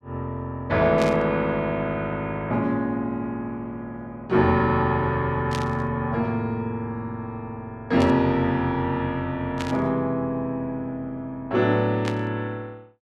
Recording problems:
burst of static; 5 times, first at 1 s; peak -3 dB vs average level

